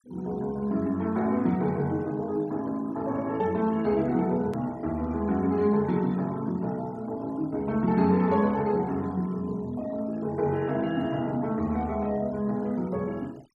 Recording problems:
noise reduction artefacts; signal-to-artefact ratio 25 dB
click at an edit; at 4.5 s

